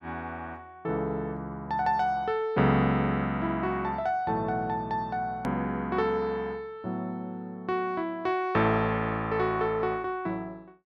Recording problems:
click at an edit; at 5.5 s

